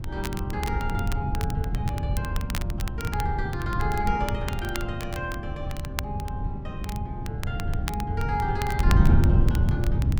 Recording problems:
wind noise; below 130 Hz, SNR -5 dB
crackling; vinyl, SNR 8 dB

